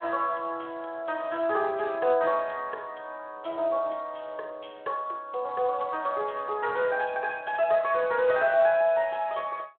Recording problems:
phone line; 320 Hz to 3.6 kHz, Speex

